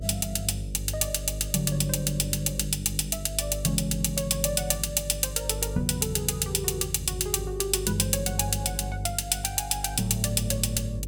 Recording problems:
hum; 50 Hz, harmonics up to 550 Hz, SNR 10 dB

